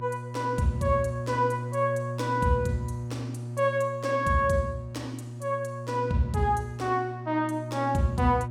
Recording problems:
electrical hum; 60 Hz, harmonics up to 600 Hz, SNR 8 dB

